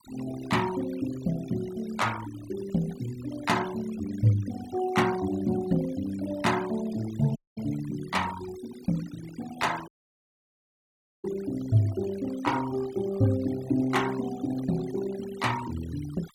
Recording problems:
noise reduction artefacts; signal-to-artefact ratio 15 dB
dropout; at 7.5 s and at 10 s for 1.5 s

